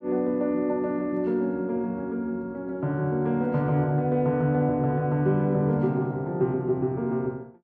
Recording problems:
none

